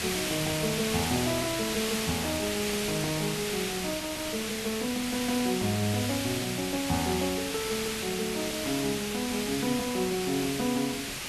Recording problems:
background hiss; slope 0 dB per octave, SNR 1 dB

